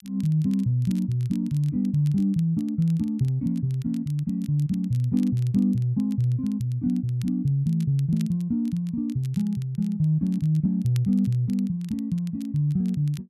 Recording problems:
crackling; vinyl, SNR 28 dB

